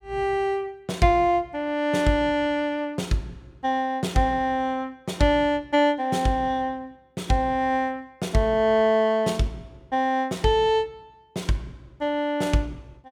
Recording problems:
none

